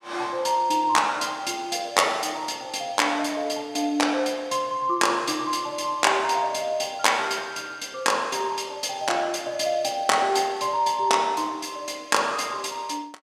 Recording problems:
none

